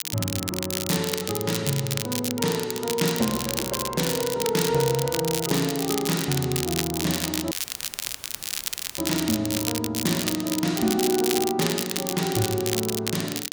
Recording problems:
crackle; vinyl, SNR 3 dB
audio cutting out; at 7.5 s for 1.5 s; filled with static

